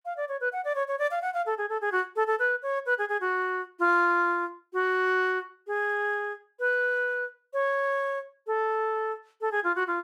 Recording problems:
none

